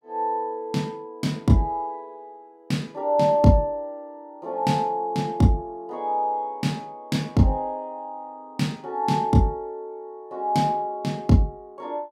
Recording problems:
none

